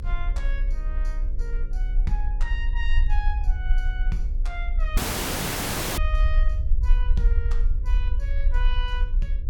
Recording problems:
electrical hum; 60 Hz, harmonics up to 540 Hz, SNR 12 dB
low-frequency rumble; below 46 Hz, strongest tone 30 Hz, SNR -10 dB
dropout; at 5 s for 1 s

